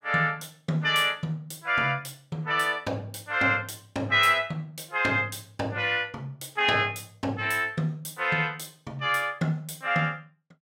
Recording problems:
none

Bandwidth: 16 kHz